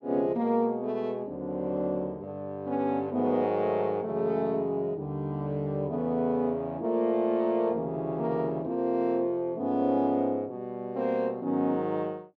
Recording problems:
none

